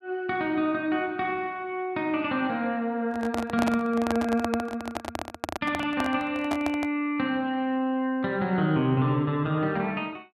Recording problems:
handling noise; from 3 to 7 s; peak +2 dB vs average level

